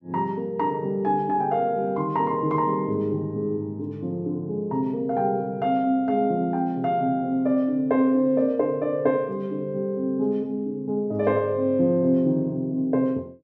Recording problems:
none

